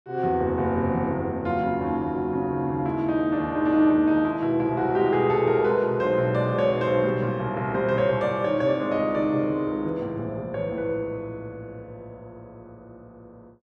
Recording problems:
none

